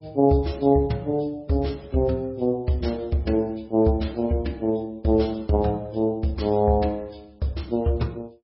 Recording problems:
codec artefacts; MP3, log-spectral distance 2 dB, nothing above 5.5 kHz

